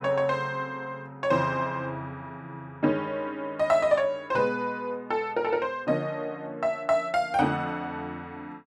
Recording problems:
none

